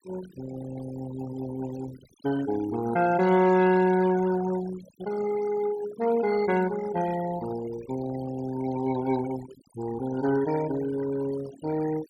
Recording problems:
denoising artefacts; signal-to-artefact ratio 14 dB

